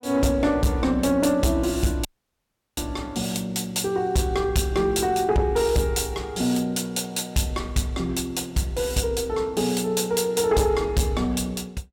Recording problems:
distortion; soft clipping, signal-to-distortion ratio 12 dB
dropout; at 2 s for 0.5 s

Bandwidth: 17.5 kHz